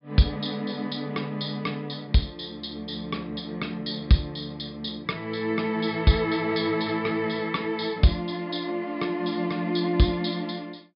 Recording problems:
treble cut off; nothing above 5.5 kHz

